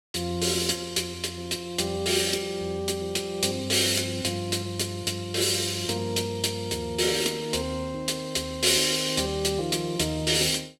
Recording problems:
none

